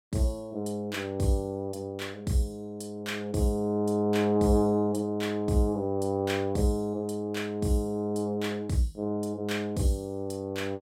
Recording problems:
none

